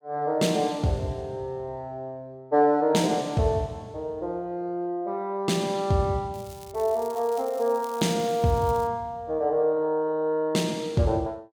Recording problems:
crackling; from 6.5 to 9 s; loose cable, SNR 21 dB

